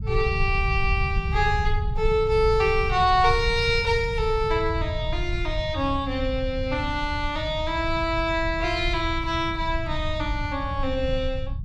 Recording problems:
low-frequency rumble; below 94 Hz, SNR 6 dB

